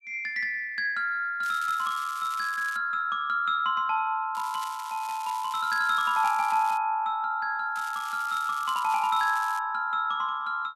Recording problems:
crackle; from 1.5 to 3 s, from 4.5 to 7 s and from 8 to 9.5 s; loose cable, SNR 17 dB

